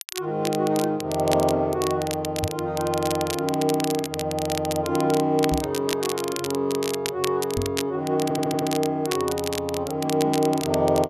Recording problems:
crackle; vinyl, SNR 9 dB
microphone thump; at 2.5 s, at 5.5 s and at 7.5 s; peak -1 dB vs average level
stutter; at 8 s

